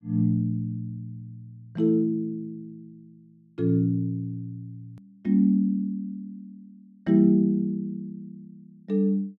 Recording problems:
edit click; at 5 s

